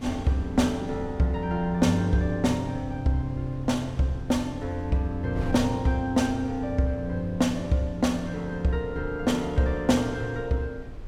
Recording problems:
wind noise; below 140 Hz, SNR 15 dB

